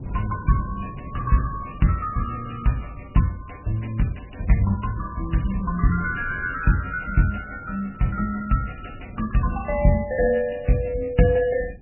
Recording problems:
lossy compression; MP3, log-spectral distance 7 dB, nothing above 2.8 kHz
wind on the microphone; below 200 Hz, SNR 17 dB

